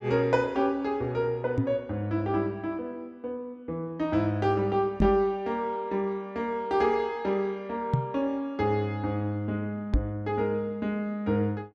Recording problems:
knock on the microphone; 4 times, first at 1.5 s; peak +8 dB vs average level

